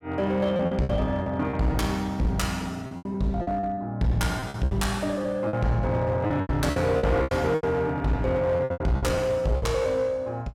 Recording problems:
distorted audio; hard clipping, uneven, signal-to-distortion ratio 11 dB
packet loss; 12% of the sound replaced, filled with repeated pitch periods

